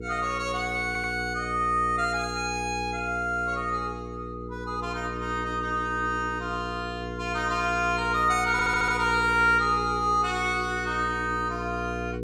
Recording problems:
mains hum; 60 Hz, harmonics up to 480 Hz, SNR 9 dB
stutter; at 1 s and at 8.5 s

